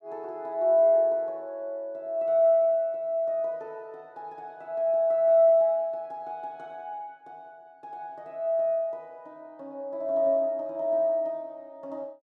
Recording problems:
none

